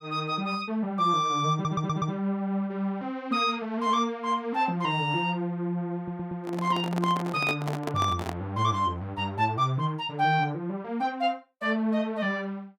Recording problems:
audio stuttering; at 1.5 s and at 6 s
microphone handling noise; from 6 to 8.5 s; peak -1 dB vs average level

